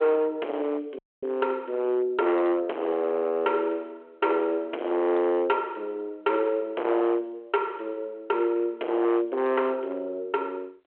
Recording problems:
telephone audio; 320 Hz to 3.2 kHz, G.726
distortion; hard clipping, signal-to-distortion ratio 7 dB
audio cutting out; at 1 s

